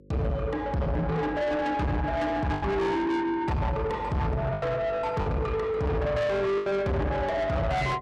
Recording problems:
distorted audio; soft clipping, signal-to-distortion ratio 7 dB
electrical hum; 50 Hz, harmonics up to 550 Hz, SNR 22 dB
packet loss; 4% of the sound replaced, filled with the last packet

